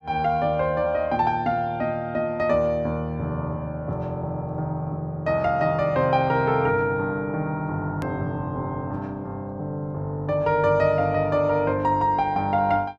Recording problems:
hard cut with a click; at 8 s

